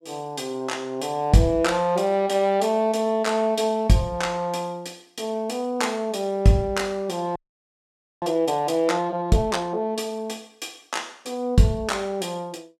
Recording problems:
audio freezing; at 7.5 s for 1 s

